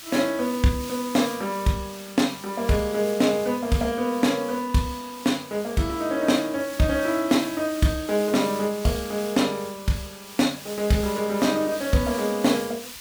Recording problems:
background hiss; slope +3 dB per octave, SNR 14 dB

